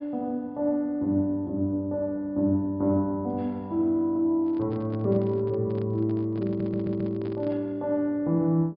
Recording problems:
treble cut off; nothing above 5.1 kHz
microphone handling noise; from 4.5 to 7.5 s; peak -11 dB vs average level
audio stuttering; at 6.5 s

